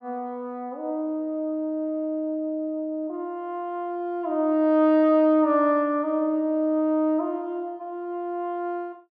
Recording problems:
none

